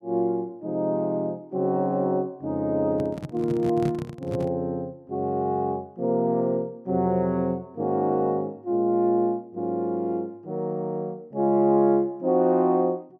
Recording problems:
handling noise; from 3 to 4.5 s; peak 0 dB vs average level

